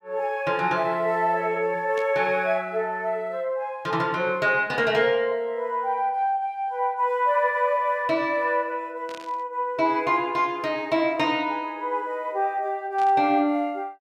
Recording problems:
burst of static; at 2 s, at 9 s and at 13 s; peak -12 dB vs average level

